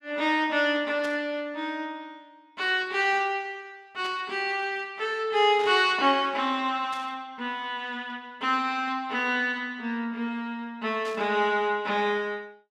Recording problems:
burst of static; 5 times, first at 1 s; peak -10 dB vs average level

